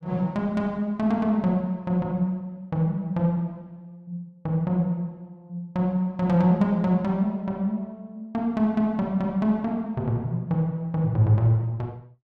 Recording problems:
none

